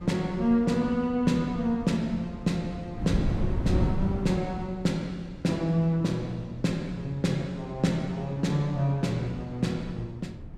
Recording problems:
wind noise; below 180 Hz, SNR 8 dB

